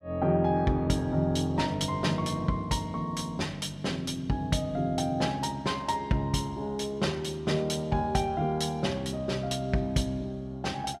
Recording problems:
none

